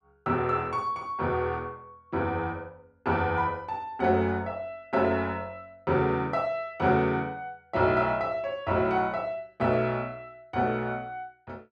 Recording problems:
none

